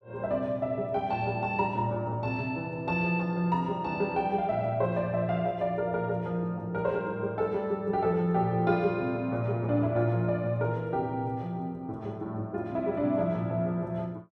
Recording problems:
none

